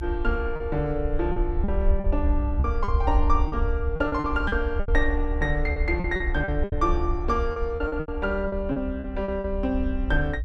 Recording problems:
rumble; below 68 Hz, SNR 2 dB
packet loss; 11% of the sound replaced, filled with repeated pitch periods

